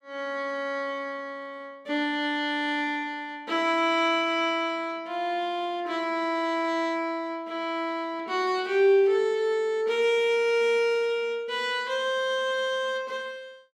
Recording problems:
none

